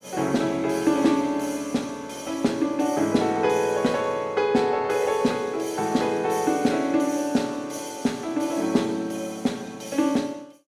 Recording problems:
none

